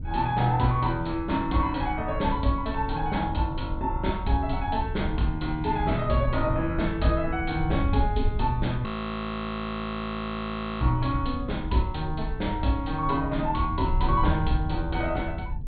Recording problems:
treble cut off; nothing above 4.2 kHz
low-frequency rumble; below 110 Hz, SNR 10 dB
wind on the microphone; below 84 Hz, SNR 7 dB
frozen audio; at 9 s for 2 s

